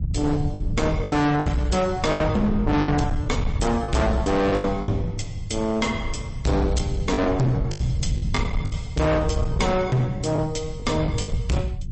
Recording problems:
lossy compression; MP3, log-spectral distance 3 dB, nothing above 8.2 kHz
distorted audio; hard clipping, uneven, signal-to-distortion ratio 6 dB
rumble; below 140 Hz, SNR 5 dB
packet loss; 9% of the sound replaced, filled with the last packet

